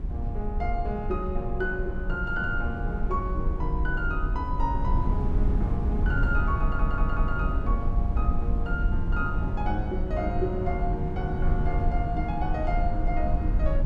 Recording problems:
low-frequency rumble; below 56 Hz, SNR 0 dB
wind on the microphone; below 170 Hz, SNR 0 dB
stutter; at 6.5 s

